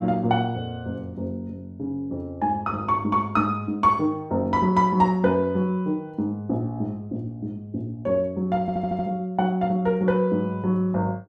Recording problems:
stutter; at 8.5 s

